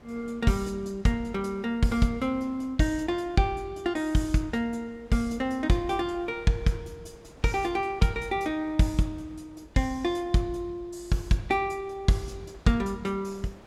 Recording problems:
wind on the microphone; below 930 Hz, SNR 25 dB

